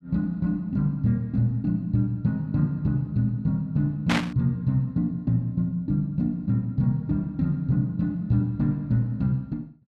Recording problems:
static burst; at 4 s; peak +3 dB vs average level

